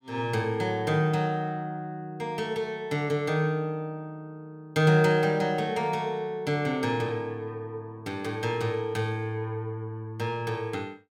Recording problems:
none

